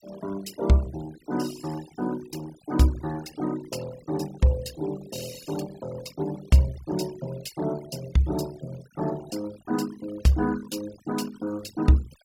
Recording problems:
noise reduction artefacts; signal-to-artefact ratio 18 dB

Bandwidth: 16.5 kHz